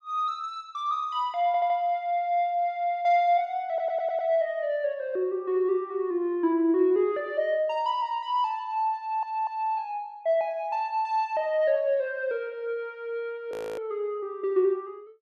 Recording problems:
stutter; at 1.5 s, at 3.5 s and at 9 s
frozen audio; at 14 s

